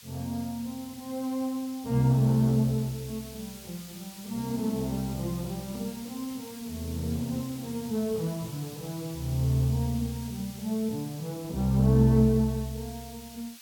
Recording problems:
hiss; slope +4 dB per octave, SNR 17 dB

